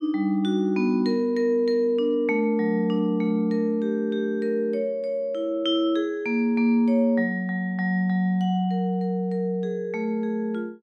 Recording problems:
none

